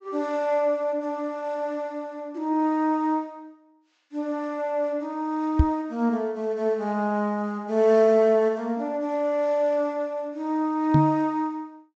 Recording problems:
treble missing; nothing above 8 kHz
knock on the microphone; at 5.5 s and at 11 s; peak +9 dB vs average level

